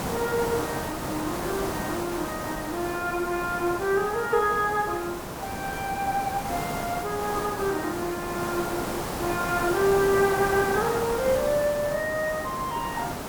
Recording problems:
background hiss; SNR 5 dB

